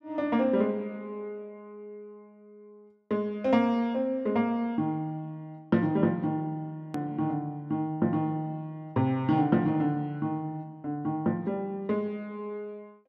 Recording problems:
edit click; at 7 s

